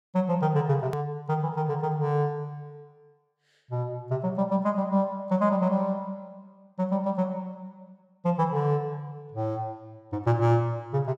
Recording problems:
click at an edit; at 1 s

